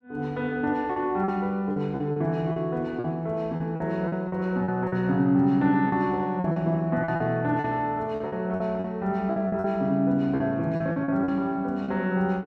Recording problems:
lost packets; 10% of the sound replaced, filled with repeated pitch periods

